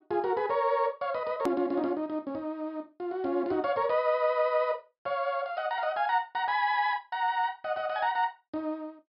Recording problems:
low-pass filter; nothing above 5.5 kHz
edit click; at 1.5 s

